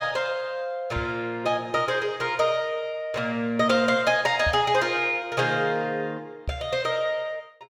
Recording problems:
microphone thump; at 1 s, at 4.5 s and at 6.5 s; peak -2 dB vs average level

